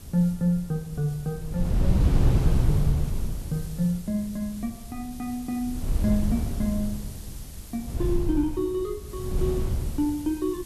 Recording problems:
background hiss; slope +1 dB per octave, SNR 17 dB
wind noise; below 120 Hz, SNR -1 dB

